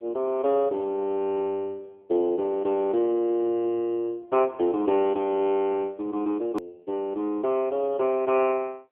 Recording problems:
telephone audio; 260 Hz to 3.3 kHz, AMR-NB
edit click; at 6.5 s

